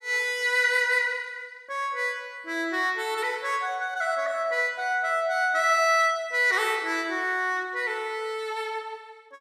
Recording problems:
none

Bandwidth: 15 kHz